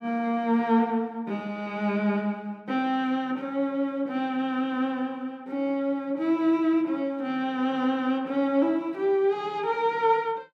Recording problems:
none

